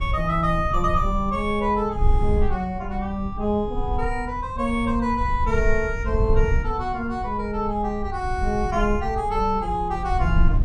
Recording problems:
low-frequency rumble; below 72 Hz, SNR 4 dB

